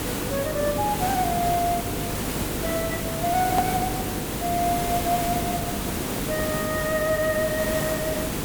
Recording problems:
electrical hum; 50 Hz, harmonics up to 500 Hz, SNR 8 dB
hiss; slope -5 dB per octave, SNR 1 dB
hard cut with a click; at 3.5 s

